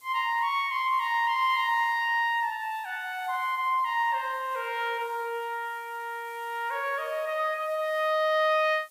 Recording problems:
hiss; SNR 27 dB

